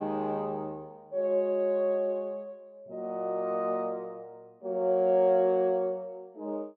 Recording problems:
none

